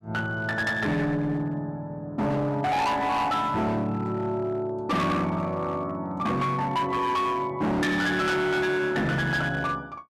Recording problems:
distortion; hard clipping, signal-to-distortion ratio 8 dB

